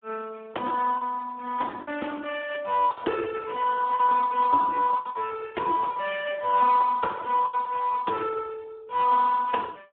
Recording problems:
telephone audio; 260 Hz to 3.4 kHz, Speex
lost packets; 4% of the sound replaced, filled with the last packet

